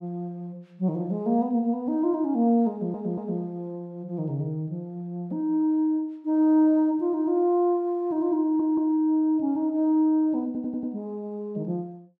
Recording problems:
audio stuttering; at 2.5 s, at 8.5 s and at 10 s

